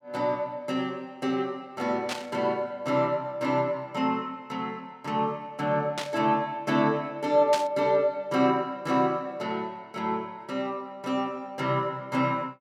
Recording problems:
static burst; at 2 s, at 6 s and at 7.5 s; peak +1 dB vs average level

